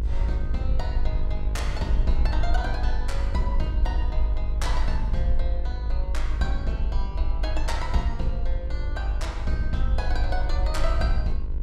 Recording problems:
hum; 50 Hz, harmonics up to 1.6 kHz, SNR 10 dB
rumble; below 54 Hz, strongest tone 20 Hz, SNR -5 dB

